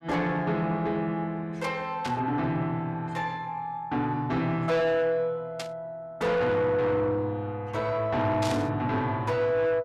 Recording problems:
distortion; soft clipping, signal-to-distortion ratio 10 dB
static burst; at 2 s, at 5.5 s and at 8.5 s; peak -3 dB vs average level

